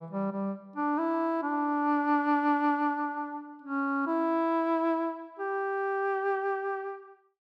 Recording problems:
none

